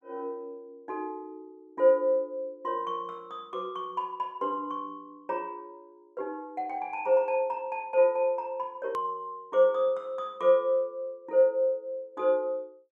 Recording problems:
edit click; at 9 s

